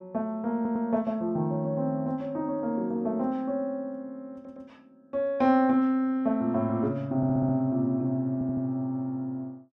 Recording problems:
stutter; 4 times, first at 0.5 s

